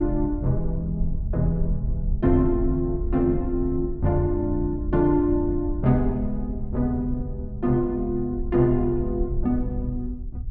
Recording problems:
wind on the microphone; below 64 Hz, SNR 8 dB

